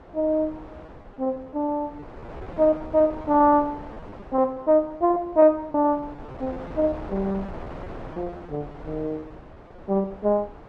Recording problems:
wind on the microphone; below 770 Hz, SNR 17 dB
packet loss; 12% of the sound replaced, filled with repeated pitch periods

